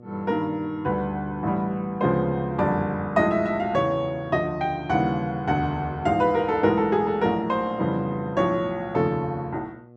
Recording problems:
electrical hum; 60 Hz, harmonics up to 1.2 kHz, SNR 24 dB

